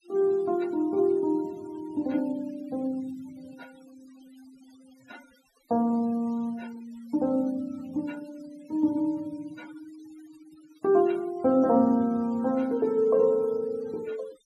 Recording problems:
denoising artefacts; signal-to-artefact ratio 27 dB

